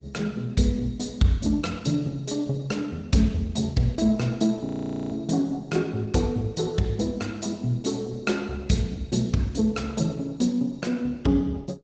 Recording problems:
treble missing; nothing above 7.3 kHz
lossy codec; Opus, log-spectral distance 3 dB
frozen audio; at 4.5 s

